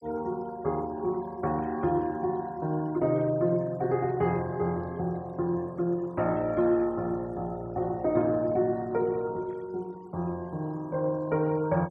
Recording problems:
noise reduction artefacts; signal-to-artefact ratio 26 dB

